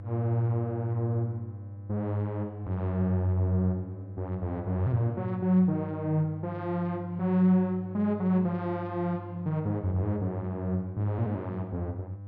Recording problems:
hum; 50 Hz, harmonics up to 500 Hz, SNR 12 dB

